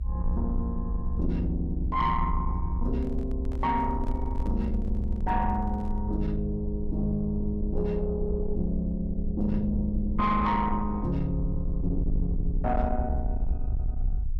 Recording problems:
distorted audio; soft clipping, signal-to-distortion ratio 11 dB
rumble; below 64 Hz, SNR 3 dB
handling noise; from 3 to 6 s; peak -11 dB vs average level

